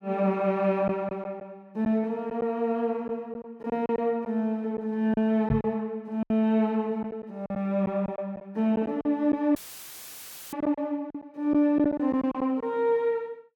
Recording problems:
packet loss; 7% of the sound replaced, filled with silence
knock on the microphone; at 5.5 s; peak +4 dB vs average level
audio cutting out; at 9.5 s for 1 s; filled with static

